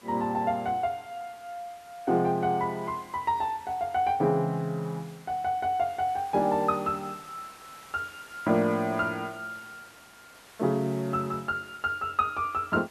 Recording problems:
hiss; slope -2 dB per octave, SNR 22 dB

